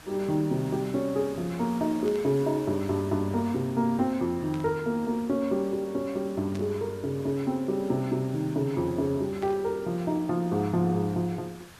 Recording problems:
background hiss; SNR 20 dB
burst of static; 4 times, first at 2 s; peak -12 dB vs average level

